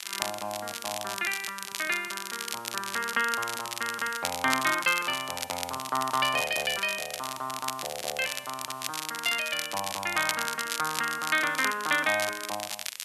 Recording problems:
hiss; SNR 19 dB
crackle; vinyl, SNR 5 dB

